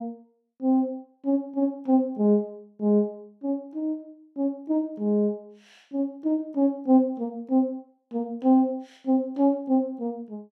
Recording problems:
none

